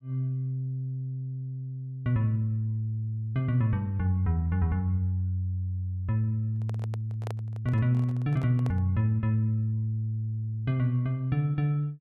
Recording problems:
microphone handling noise; from 6.5 to 9 s; peak -8 dB vs average level

